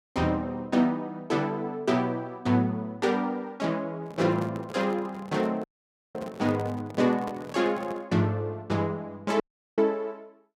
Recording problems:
microphone handling noise; from 4 to 8 s; peak -6 dB vs average level
dropout; at 5.5 s for 0.5 s and at 9.5 s

